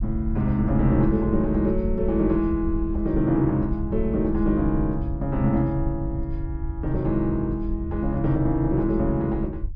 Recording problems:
low-frequency rumble; below 74 Hz, SNR 8 dB

